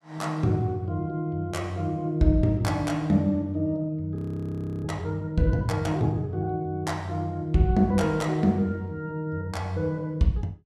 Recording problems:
frozen audio; at 4 s for 0.5 s

